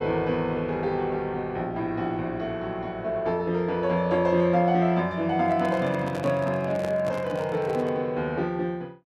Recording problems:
microphone handling noise; from 5.5 to 8 s; peak -4 dB vs average level

